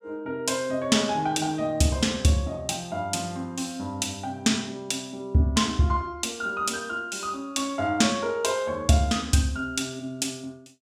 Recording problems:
none

